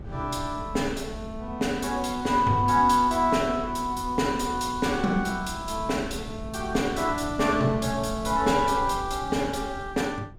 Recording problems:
wind noise; below 170 Hz, SNR 15 dB

